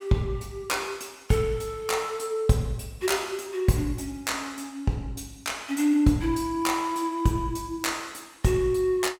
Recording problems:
none

